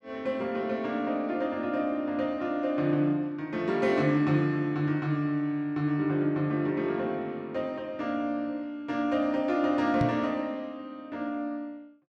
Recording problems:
microphone thump; at 10 s; peak +3 dB vs average level

